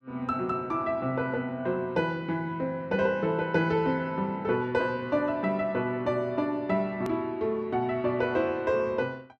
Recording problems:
hard cut with a click; at 7 s

